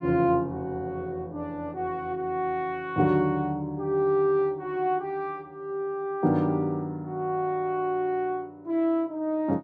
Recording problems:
none

